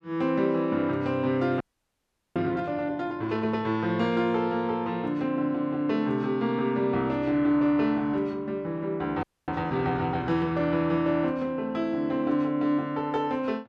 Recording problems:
audio freezing; at 1.5 s for 1 s and at 9 s

